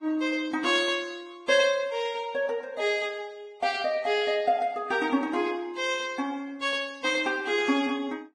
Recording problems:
codec artefacts; Vorbis, log-spectral distance 3 dB

